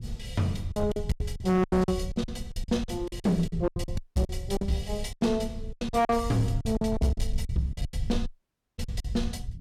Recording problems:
distorted audio; hard clipping, signal-to-distortion ratio 11 dB
low-frequency rumble; below 92 Hz, SNR 8 dB
lost packets; 17% of the sound replaced, filled with silence
audio cutting out; at 4 s and at 8.5 s for 0.5 s

